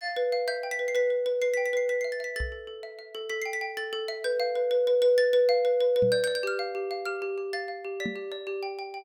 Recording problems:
microphone bump; at 2.5 s, at 6 s and at 8 s; peak -3 dB vs average level

